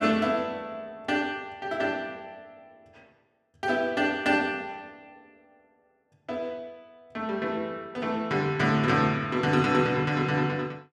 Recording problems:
none

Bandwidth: 14.5 kHz